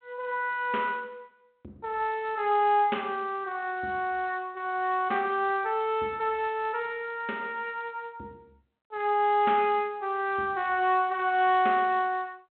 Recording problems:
telephone audio; 260 Hz to 3.5 kHz, G.726

